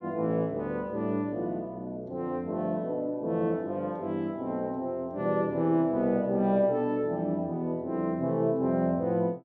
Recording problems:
none

